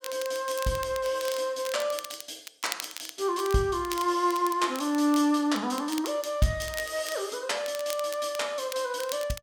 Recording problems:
crackle; vinyl, SNR 13 dB

